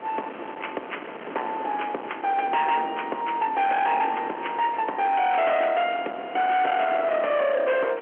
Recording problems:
telephone audio; 300 Hz to 3.3 kHz, G.711
distortion; hard clipping, uneven, signal-to-distortion ratio 8 dB
wind noise; below 1.5 kHz, SNR 12 dB

